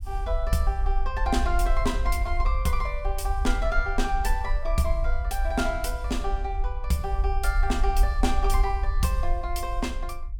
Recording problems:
low-frequency rumble; below 52 Hz, SNR 0 dB

